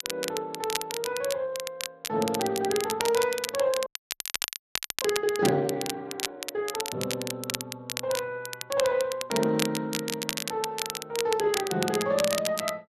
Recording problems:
codec artefacts; MP3, then Speex, log-spectral distance 2 dB
crackling; vinyl, SNR 4 dB
frozen audio; at 4 s for 1 s

